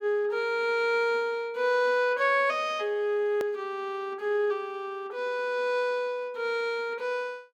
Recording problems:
click at an edit; at 3.5 s

